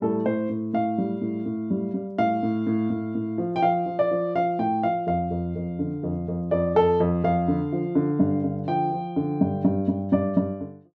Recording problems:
none

